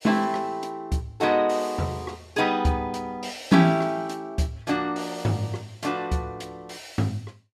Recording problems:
none

